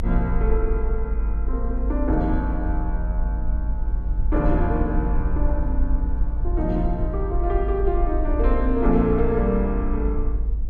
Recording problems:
low-frequency rumble; below 52 Hz, SNR 0 dB

